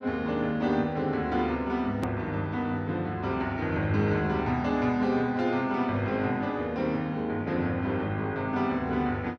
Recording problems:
click at an edit; at 2 s

